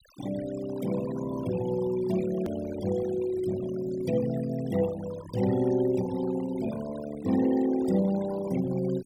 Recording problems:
denoising artefacts; signal-to-artefact ratio 14 dB
click at an edit; at 2.5 s

